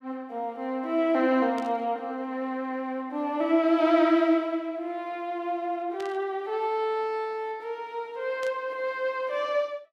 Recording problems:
burst of static; at 1.5 s, at 6 s and at 8.5 s; peak -11 dB vs average level

